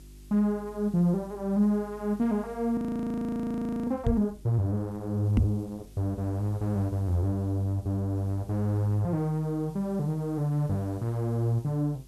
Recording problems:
hum; 50 Hz, harmonics up to 400 Hz, SNR 23 dB
hiss; slope 0 dB per octave, SNR 30 dB
audio freezing; at 3 s for 1 s
microphone thump; at 4 s and at 5.5 s; peak +8 dB vs average level

